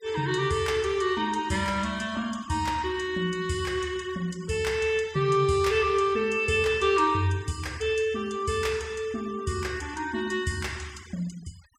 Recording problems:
noise reduction artefacts; signal-to-artefact ratio 23 dB

